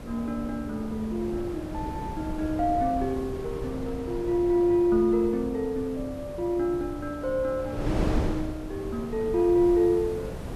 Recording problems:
background hiss; slope -2 dB per octave, SNR 29 dB
wind noise; below 390 Hz, SNR 9 dB

